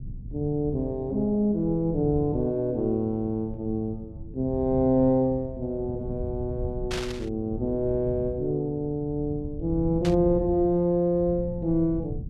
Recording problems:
low-frequency rumble; below 130 Hz, SNR 12 dB
static burst; at 7 s and at 10 s; peak -4 dB vs average level

